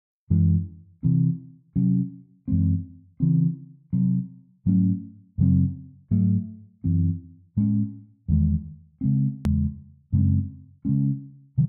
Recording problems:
edit click; at 9.5 s

